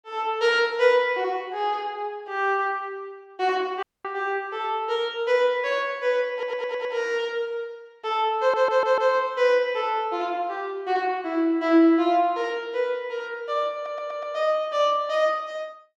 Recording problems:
audio cutting out; at 4 s
stutter; at 6.5 s, at 8.5 s and at 14 s

